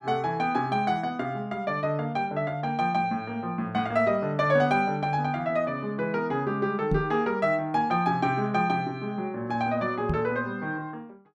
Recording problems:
microphone bump; at 7 s and at 10 s; peak +4 dB vs average level

